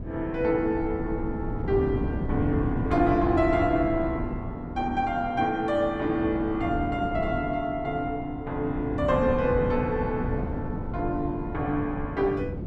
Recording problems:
wind on the microphone; below 240 Hz, SNR 6 dB

